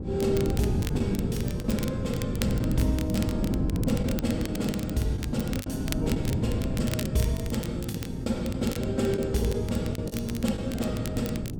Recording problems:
hum; 60 Hz, harmonics up to 540 Hz, SNR 10 dB
wind on the microphone; below 210 Hz, SNR 3 dB
crackling; vinyl, SNR 11 dB
packet loss; 5% of the sound replaced, filled with the last packet

